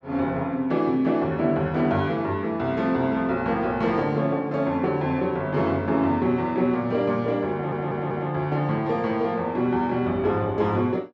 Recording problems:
audio stuttering; at 7.5 s

